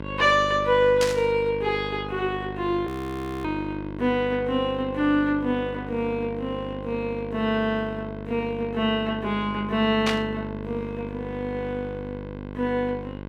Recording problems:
electrical hum; 50 Hz, harmonics up to 2.6 kHz, SNR 10 dB
static burst; at 1 s and at 10 s; peak +3 dB vs average level
audio freezing; at 3 s for 0.5 s

